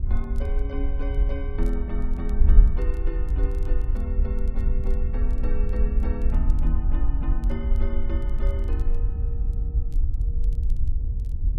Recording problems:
rumble; below 64 Hz, SNR -1 dB
wind noise; below 54 Hz, SNR -9 dB
crackling; vinyl, SNR 27 dB

